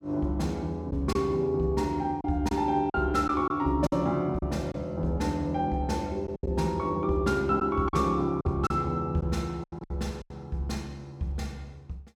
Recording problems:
packet loss; 6% of the sound replaced, filled with silence

